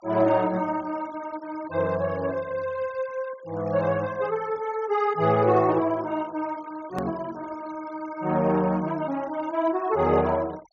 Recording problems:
low-pass filter; nothing above 6.8 kHz
noise reduction artefacts; signal-to-artefact ratio 23 dB
hard cut with a click; at 7 s

